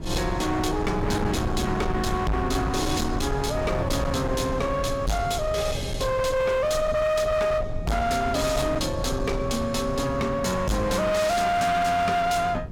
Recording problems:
distortion; hard clipping, uneven, signal-to-distortion ratio 6 dB
low-frequency rumble; below 180 Hz, SNR 8 dB
wind on the microphone; below 350 Hz, SNR 14 dB

